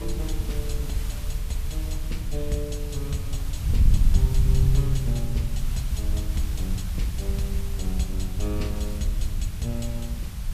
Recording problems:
hiss; slope -1 dB per octave, SNR 9 dB
wind noise; below 74 Hz, SNR -5 dB

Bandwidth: 14.5 kHz